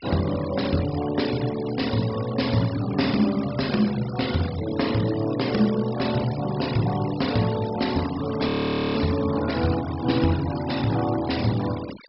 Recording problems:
treble cut off; nothing above 5.4 kHz
noise reduction artefacts; signal-to-artefact ratio 14 dB
audio freezing; at 8.5 s

